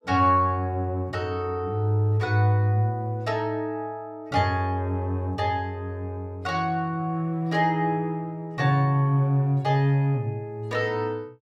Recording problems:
none

